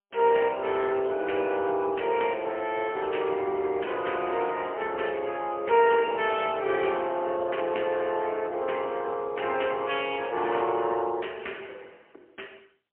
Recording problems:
telephone audio; 300 Hz to 3.1 kHz, AMR-NB, then MP3

